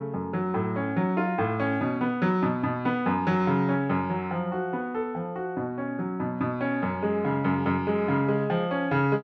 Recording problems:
none

